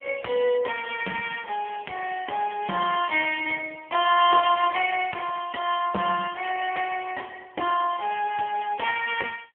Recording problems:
phone line; 280 Hz to 3.3 kHz, AMR-NB
crackle; from 1 to 3.5 s, at 4.5 s and from 5 to 6.5 s; loose cable, SNR 27 dB

